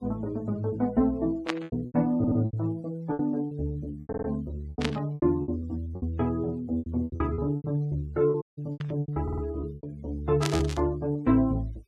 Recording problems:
noise reduction artefacts; signal-to-artefact ratio 28 dB
packet loss; 13% of the sound replaced, filled with repeated pitch periods
burst of static; 4 times, first at 1.5 s; peak +3 dB vs average level
stutter; at 2 s, at 4 s and at 9 s
dropout; at 8.5 s

